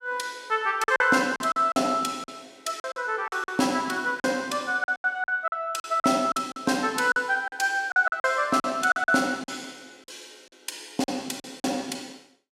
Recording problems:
lost packets; 11% of the sound replaced, filled with silence

